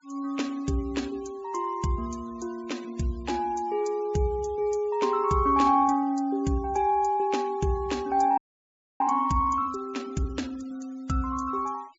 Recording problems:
low-pass filter; nothing above 8 kHz
denoising artefacts; signal-to-artefact ratio 26 dB
frozen audio; at 8.5 s for 0.5 s

